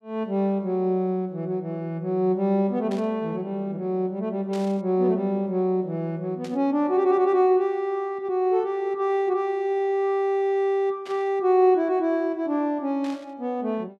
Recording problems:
static burst; 5 times, first at 3 s; peak -14 dB vs average level

